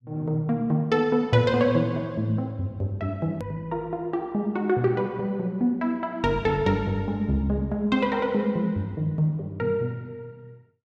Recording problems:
edit click; at 3.5 s

